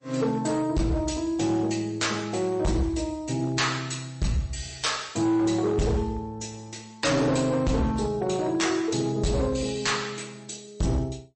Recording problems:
codec artefacts; MP3, log-spectral distance 6 dB, nothing above 8.2 kHz
distortion; hard clipping, signal-to-distortion ratio 7 dB

